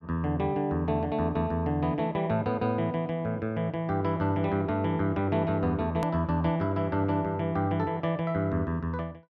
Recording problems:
hard cut with a click; at 6 s

